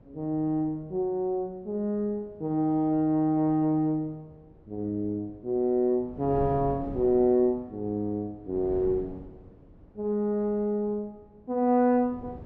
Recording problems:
wind noise; below 300 Hz, SNR 19 dB

